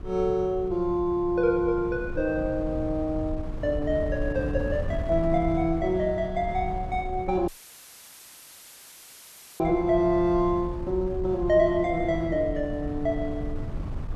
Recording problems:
wind on the microphone; below 120 Hz, SNR 10 dB
dropout; at 7.5 s for 2 s; filled with static

